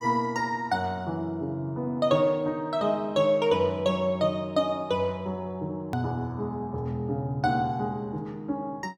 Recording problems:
click at an edit; at 6 s

